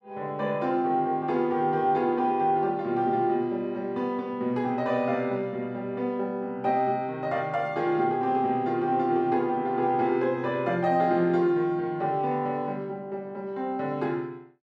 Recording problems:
none

